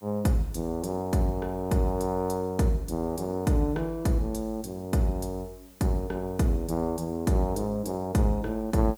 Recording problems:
background hiss; slope -1 dB per octave, SNR 27 dB

